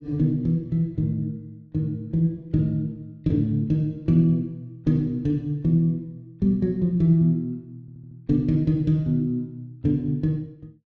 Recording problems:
audio stuttering; at 8 s

